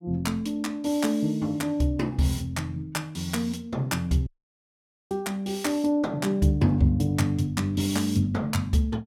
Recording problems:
audio cutting out; at 4.5 s for 1 s

